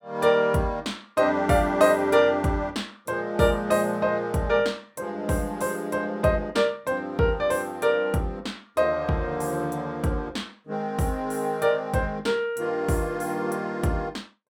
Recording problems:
none

